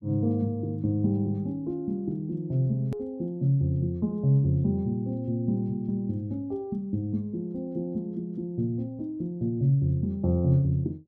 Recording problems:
edit click; at 3 s

